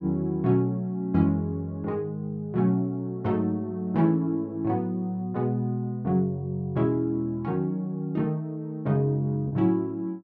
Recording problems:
lost packets; 0.4% of the sound replaced, filled with repeated pitch periods

